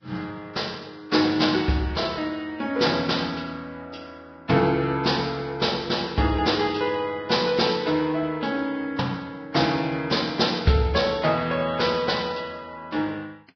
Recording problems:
lossy codec; Vorbis, log-spectral distance 4 dB, nothing above 5.3 kHz

